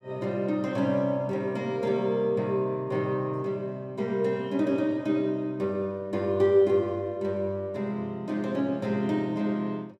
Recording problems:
none

